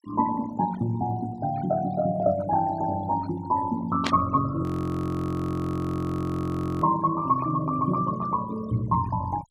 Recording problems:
denoising artefacts; signal-to-artefact ratio 18 dB
burst of static; at 4 s; peak +2 dB vs average level
frozen audio; at 4.5 s for 2 s

